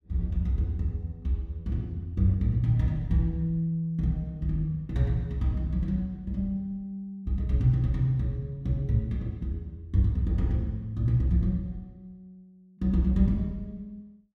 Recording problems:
none

